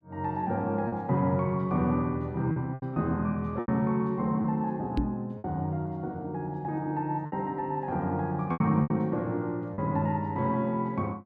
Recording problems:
packet loss; 5% of the sound replaced, filled with repeated pitch periods
microphone bump; at 5 s; peak +4 dB vs average level

